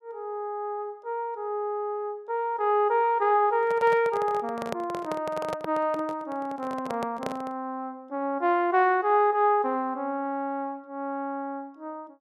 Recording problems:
microphone handling noise; from 3.5 to 7.5 s; peak -1 dB vs average level

